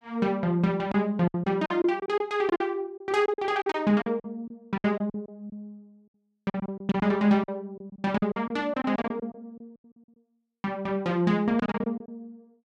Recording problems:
packet loss; 12% of the sound replaced, filled with silence

